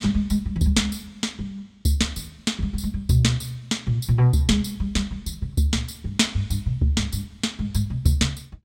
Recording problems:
none

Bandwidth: 16.5 kHz